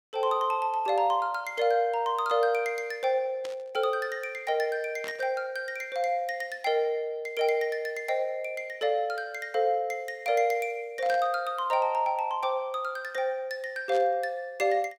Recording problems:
burst of static; 4 times, first at 3.5 s; peak -9 dB vs average level

